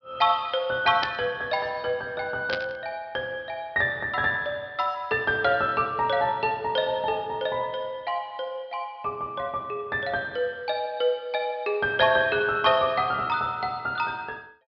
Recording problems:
low-pass filter; nothing above 5.5 kHz
burst of static; at 1 s and at 2.5 s; peak +1 dB vs average level

